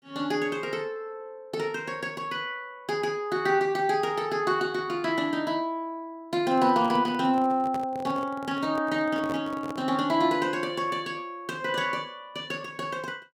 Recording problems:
handling noise; from 6.5 to 10 s; peak -6 dB vs average level

